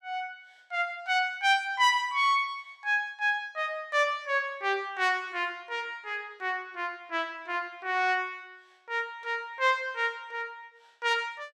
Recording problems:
none

